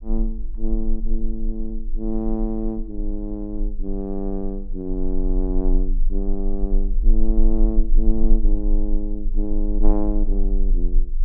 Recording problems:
rumble; below 32 Hz, strongest tone 22 Hz, SNR -2 dB

